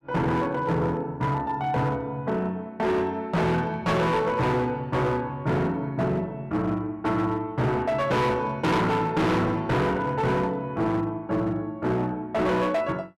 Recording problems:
distortion; hard clipping, signal-to-distortion ratio 7 dB

